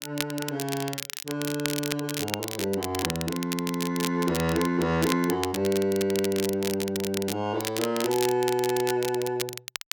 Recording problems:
crackling; vinyl, SNR 6 dB

